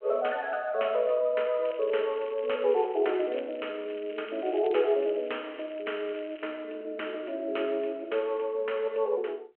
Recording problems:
phone line; 340 Hz to 3.1 kHz, G.726
crackle; from 1.5 to 6.5 s; loose cable, SNR 22 dB

